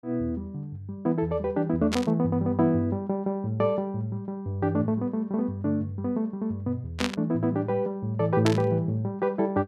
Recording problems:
static burst; at 2 s, at 7 s and at 8.5 s; peak +3 dB vs average level

